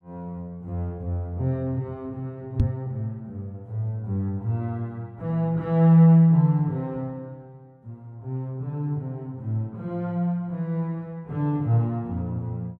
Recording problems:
knock on the microphone; at 2.5 s; peak +8 dB vs average level

